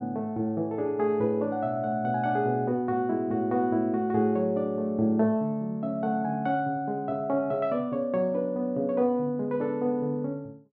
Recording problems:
none

